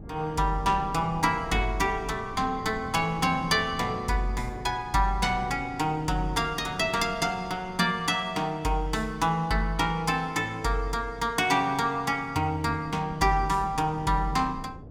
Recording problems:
wind on the microphone; below 280 Hz, SNR 17 dB

